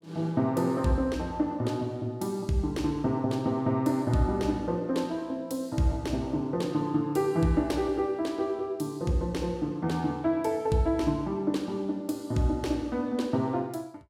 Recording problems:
none

